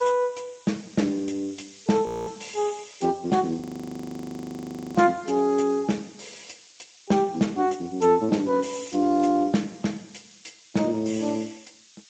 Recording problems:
codec artefacts; Speex, log-spectral distance 12 dB, nothing above 18.3 kHz
hiss; slope +6 dB per octave, SNR 24 dB
frozen audio; at 2 s and at 3.5 s for 1.5 s

